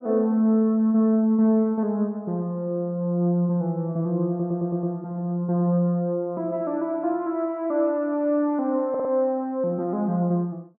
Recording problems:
stutter; at 4.5 s and at 9 s

